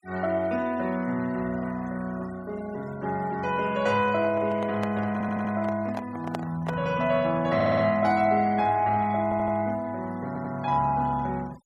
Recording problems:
noise reduction artefacts; signal-to-artefact ratio 23 dB
handling noise; from 4 to 7 s; peak -3 dB vs average level
stutter; 4 times, first at 5 s

